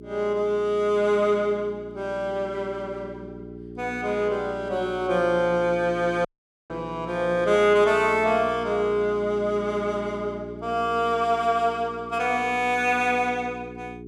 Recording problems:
hum; 60 Hz, harmonics up to 420 Hz, SNR 15 dB
dropout; at 6.5 s

